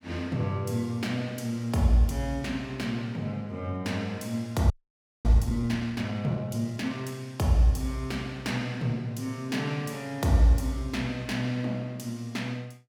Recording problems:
frozen audio; at 4.5 s for 0.5 s

